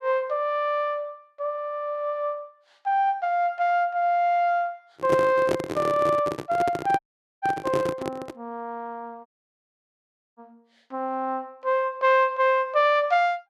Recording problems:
microphone handling noise; from 5 to 8.5 s; peak +2 dB vs average level
dropout; at 7 s and at 9.5 s for 1 s

